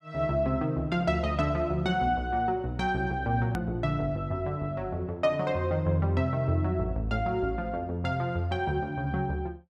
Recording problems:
hard cut with a click; at 3.5 s

